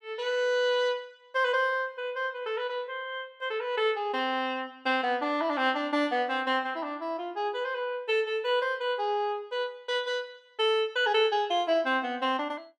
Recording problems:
none

